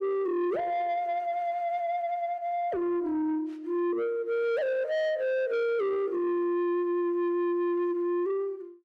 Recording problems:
distorted audio; soft clipping, signal-to-distortion ratio 11 dB

